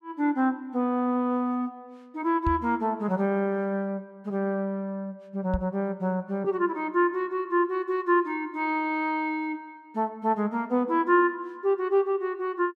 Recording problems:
knock on the microphone; at 2.5 s and at 5.5 s; peak +1 dB vs average level

